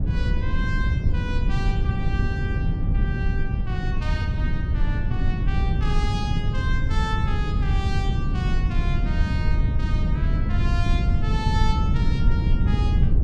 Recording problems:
wind on the microphone; below 120 Hz, SNR -10 dB

